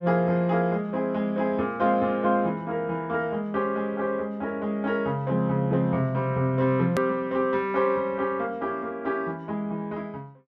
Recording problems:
hard cut with a click; at 7 s

